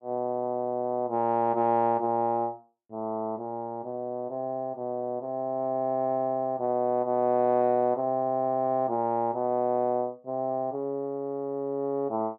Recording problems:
none

